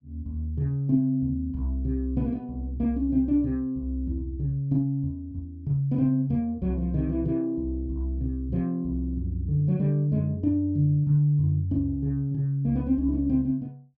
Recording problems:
none

